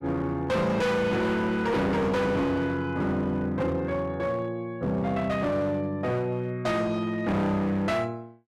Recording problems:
distortion; hard clipping, signal-to-distortion ratio 7 dB

